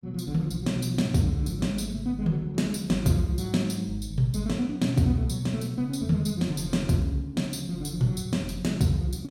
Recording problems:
none

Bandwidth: 16 kHz